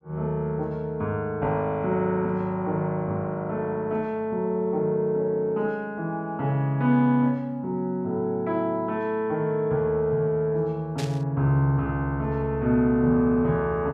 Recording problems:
burst of static; at 11 s; peak -6 dB vs average level

